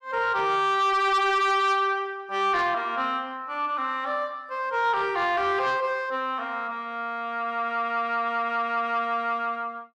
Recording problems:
distortion; soft clipping, signal-to-distortion ratio 12 dB

